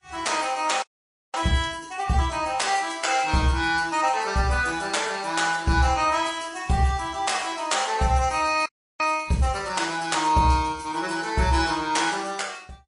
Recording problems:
lossy codec; MP3, then Vorbis, log-spectral distance 4 dB, nothing above 10.4 kHz
frozen audio; at 1 s for 0.5 s and at 8.5 s

